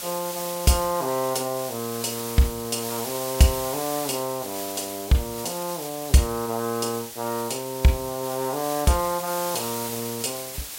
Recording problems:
hiss; slope +1 dB per octave, SNR 7 dB

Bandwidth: 16 kHz